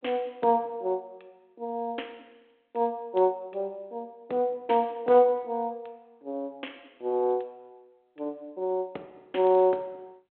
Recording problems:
telephone audio; 280 Hz to 3.3 kHz, G.726

